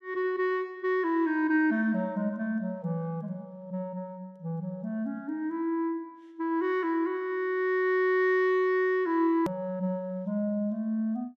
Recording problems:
click at an edit; at 9.5 s

